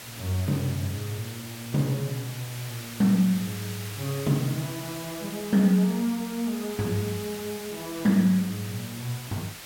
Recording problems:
background hiss; slope 0 dB per octave, SNR 11 dB

